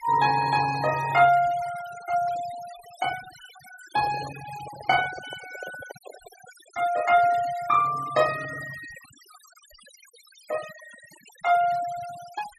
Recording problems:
noise reduction artefacts; signal-to-artefact ratio 17 dB
microphone handling noise; from 4 to 6.5 s; peak -11 dB vs average level

